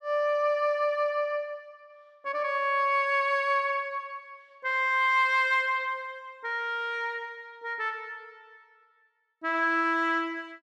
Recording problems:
none

